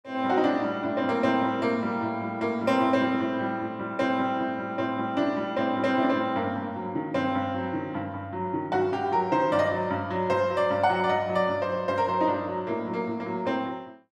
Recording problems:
none

